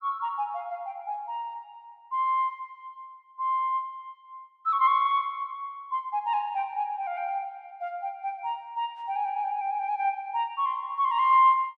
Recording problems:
none

